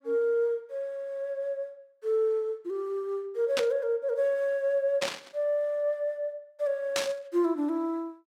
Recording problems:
static burst; at 3.5 s, at 5 s and at 7 s; peak +4 dB vs average level

